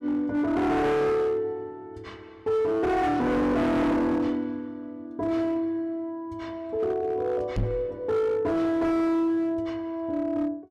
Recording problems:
distortion; hard clipping, signal-to-distortion ratio 7 dB
microphone thump; at 7.5 s; peak +2 dB vs average level

